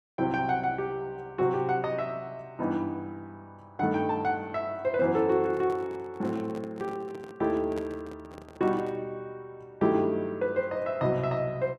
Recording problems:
microphone handling noise; from 5 to 9 s; peak -5 dB vs average level

